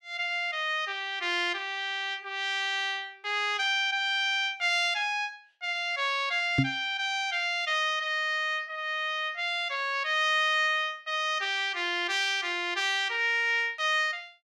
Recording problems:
knock on the microphone; at 6.5 s; peak +6 dB vs average level

